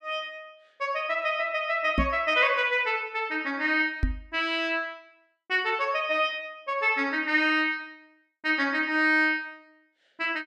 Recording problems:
microphone bump; at 2 s and at 4 s; peak +3 dB vs average level

